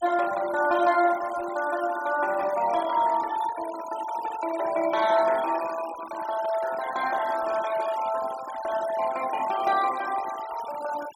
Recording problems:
noise reduction artefacts; signal-to-artefact ratio 15 dB

